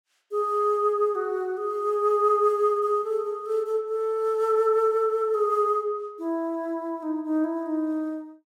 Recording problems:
none

